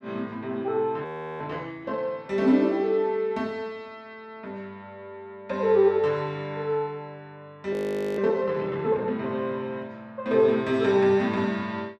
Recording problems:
audio freezing; at 1 s and at 7.5 s

